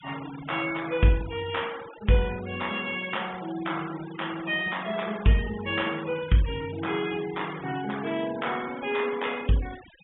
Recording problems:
low-pass filter; nothing above 3.6 kHz
denoising artefacts; signal-to-artefact ratio 15 dB

